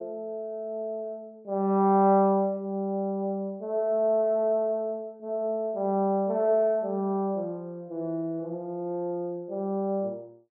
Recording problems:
none

